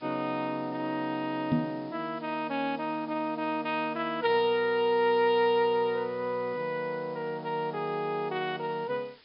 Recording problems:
low-pass filter; nothing above 5.5 kHz
background hiss; SNR 27 dB
microphone bump; at 1.5 s; peak +6 dB vs average level

